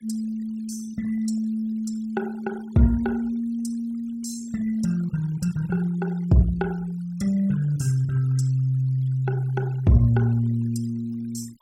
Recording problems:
denoising artefacts; signal-to-artefact ratio 24 dB

